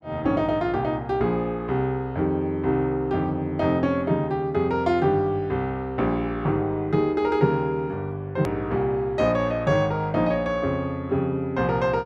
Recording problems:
edit click; at 8.5 s

